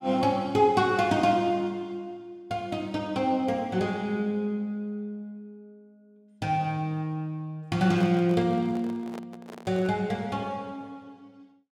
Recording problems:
microphone handling noise; from 8 to 10 s; peak -9 dB vs average level

